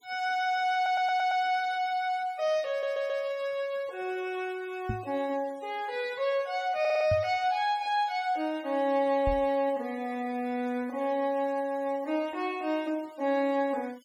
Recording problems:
denoising artefacts; signal-to-artefact ratio 25 dB
audio stuttering; at 1 s, at 2.5 s and at 7 s
knock on the microphone; at 5 s, at 7 s and at 9.5 s; peak 0 dB vs average level

